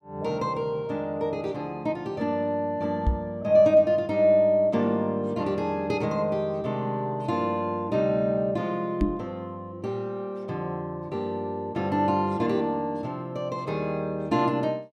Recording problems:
microphone bump; at 3 s and at 9 s; peak +6 dB vs average level

